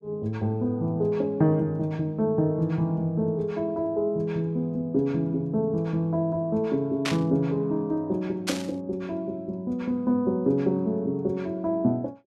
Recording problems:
static burst; at 7 s and at 8.5 s; peak +2 dB vs average level

